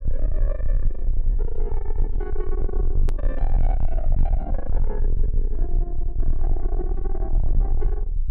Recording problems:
distortion; soft clipping, signal-to-distortion ratio 8 dB
rumble; below 36 Hz, strongest tone 20 Hz, SNR -9 dB
edit click; at 3 s

